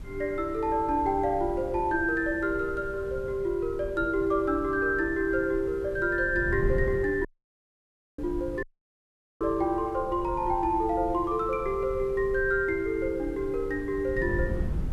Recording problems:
hiss; slope -4 dB per octave, SNR 29 dB
wind noise; below 130 Hz, SNR 12 dB
audio cutting out; at 7.5 s for 1 s and at 8.5 s for 1 s

